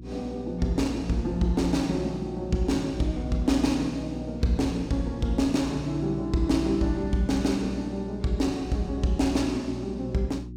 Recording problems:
electrical hum; 60 Hz, harmonics up to 360 Hz, SNR 12 dB

